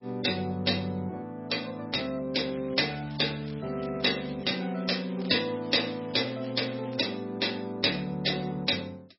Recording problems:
codec artefacts; MP3, log-spectral distance 9 dB, nothing above 5.5 kHz
crackling; from 2.5 to 5 s and from 5 to 7 s; loose cable, SNR 20 dB

